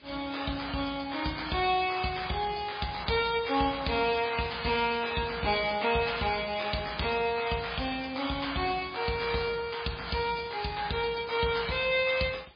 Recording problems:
lossy compression; MP3, log-spectral distance 9 dB, nothing above 4.6 kHz
hiss; SNR 29 dB

